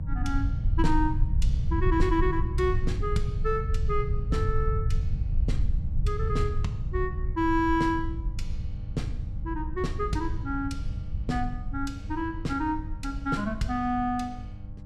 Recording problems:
hum; 50 Hz, harmonics up to 800 Hz, SNR 15 dB
low-frequency rumble; below 86 Hz, SNR 1 dB

